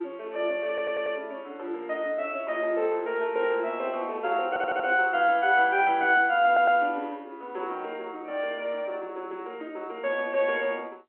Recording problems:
phone line; 300 Hz to 3.3 kHz, G.711
stutter; at 0.5 s, at 4.5 s and at 6.5 s

